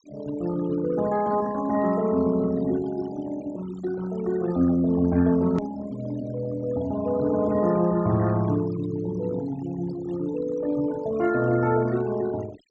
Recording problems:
treble cut off; nothing above 8 kHz
denoising artefacts; signal-to-artefact ratio 18 dB
click at an edit; at 5.5 s

